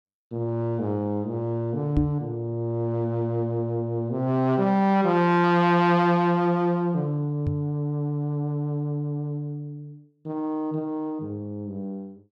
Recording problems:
microphone thump; at 2 s and at 7.5 s; peak +4 dB vs average level

